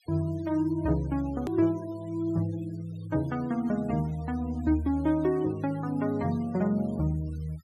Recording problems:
noise reduction artefacts; signal-to-artefact ratio 24 dB
edit click; at 1.5 s

